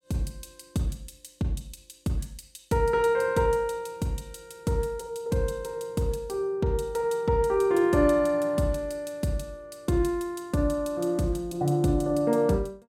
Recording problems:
none

